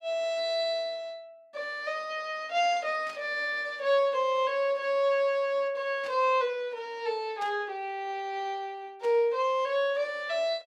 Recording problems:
static burst; 4 times, first at 3 s; peak -12 dB vs average level

